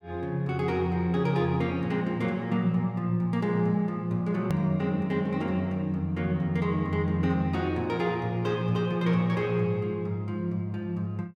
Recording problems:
edit click; at 4.5 s

